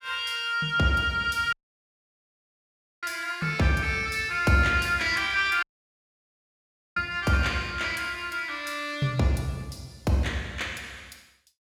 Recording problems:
dropout; at 1.5 s for 1.5 s and at 5.5 s for 1.5 s

